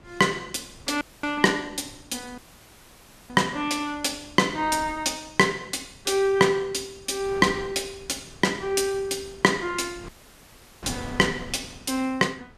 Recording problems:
wind noise; below 650 Hz, SNR 20 dB
dropout; at 1 s, at 2.5 s for 1 s and at 10 s for 0.5 s

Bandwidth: 14 kHz